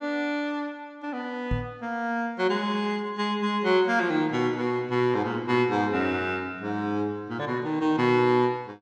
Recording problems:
microphone bump; at 1.5 s; peak +1 dB vs average level

